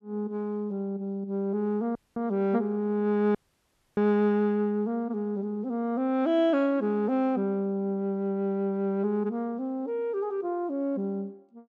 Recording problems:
dropout; at 2 s and at 3.5 s for 0.5 s

